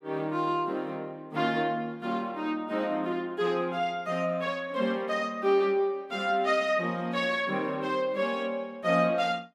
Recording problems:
none

